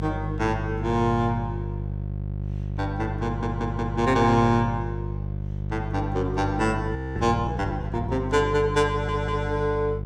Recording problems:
hum; 50 Hz, harmonics up to 550 Hz, SNR 5 dB
audio stuttering; at 3.5 s and at 9 s
audio freezing; at 7 s

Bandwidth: 16.5 kHz